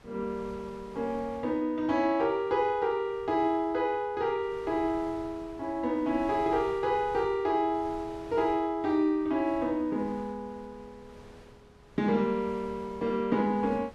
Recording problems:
wind on the microphone; below 970 Hz, SNR 22 dB

